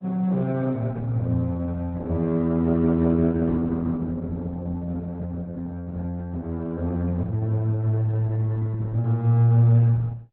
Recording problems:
codec artefacts; Opus, log-spectral distance 2 dB, nothing above 3.9 kHz

